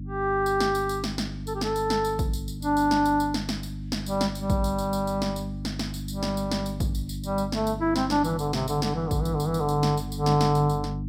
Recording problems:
electrical hum; 50 Hz, harmonics up to 300 Hz, SNR 9 dB

